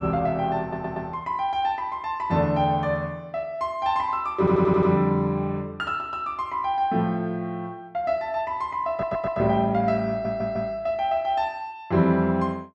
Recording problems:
stutter; 4 times, first at 0.5 s

